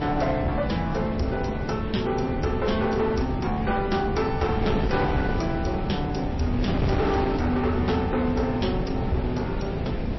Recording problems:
lossy codec; MP3, log-spectral distance 3 dB, nothing above 5.8 kHz
distorted audio; hard clipping, signal-to-distortion ratio 12 dB
wind noise; below 360 Hz, SNR 3 dB

